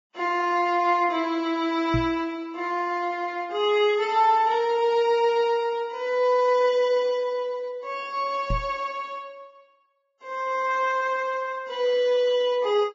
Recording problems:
lossy compression; Vorbis, log-spectral distance 2 dB
knock on the microphone; at 2 s and at 8.5 s; peak 0 dB vs average level

